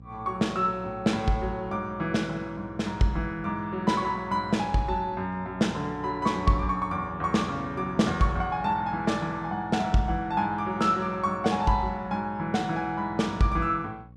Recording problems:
mains hum; 60 Hz, harmonics up to 540 Hz, SNR 20 dB

